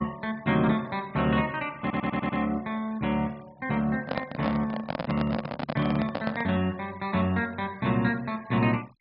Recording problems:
treble missing; nothing above 5.5 kHz
denoising artefacts; signal-to-artefact ratio 24 dB
stutter; at 2 s
microphone handling noise; from 4 to 6.5 s; peak +1 dB vs average level

